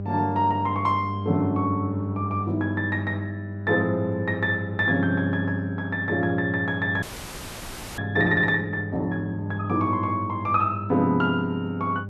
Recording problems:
mains hum; 50 Hz, harmonics up to 600 Hz, SNR 8 dB
frozen audio; at 7 s for 1 s

